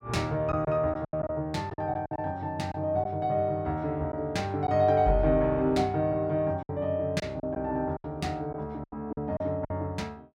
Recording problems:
packet loss; 7% of the sound replaced, filled with silence

